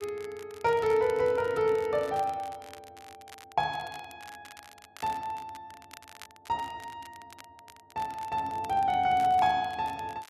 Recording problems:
crackling; vinyl, SNR 22 dB

